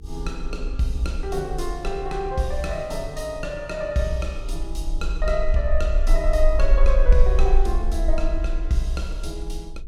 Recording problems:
electrical hum; 50 Hz, harmonics up to 450 Hz, SNR 18 dB
low-frequency rumble; below 42 Hz, strongest tone 22 Hz, SNR -1 dB

